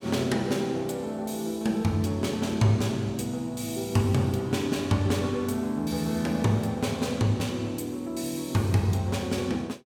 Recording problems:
none

